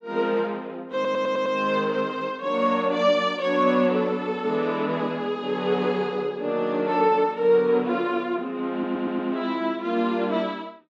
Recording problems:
stutter; at 1 s and at 8.5 s

